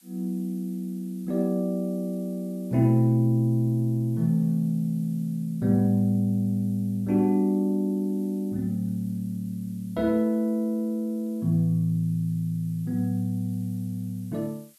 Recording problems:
background hiss; slope +3 dB per octave, SNR 29 dB

